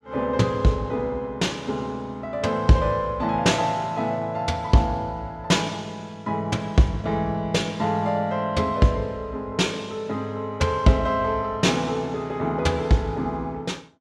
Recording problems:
none

